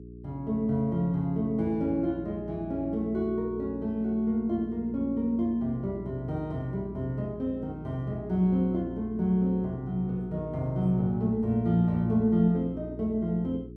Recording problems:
hum; 60 Hz, harmonics up to 420 Hz, SNR 13 dB

